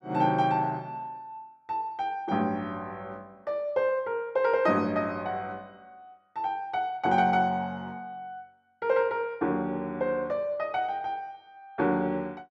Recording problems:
none

